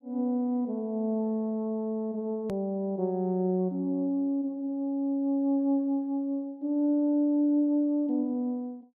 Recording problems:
hard cut with a click; at 2.5 s

